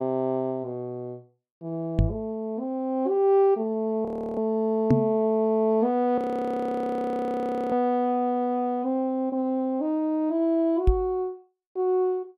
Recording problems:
knock on the microphone; at 2 s, at 5 s and at 11 s; peak +9 dB vs average level
frozen audio; at 4 s and at 6 s for 1.5 s

